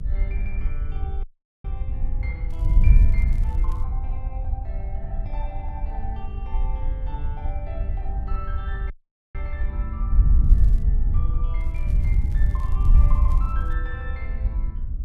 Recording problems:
electrical hum; 60 Hz, harmonics up to 1.4 kHz, SNR 19 dB
low-frequency rumble; below 68 Hz, strongest tone 66 Hz, SNR 1 dB
wind on the microphone; below 64 Hz, SNR -15 dB
audio cutting out; at 1 s and at 9 s
crackle; from 2.5 to 4 s, at 10 s and from 12 to 14 s; loose cable, SNR 19 dB

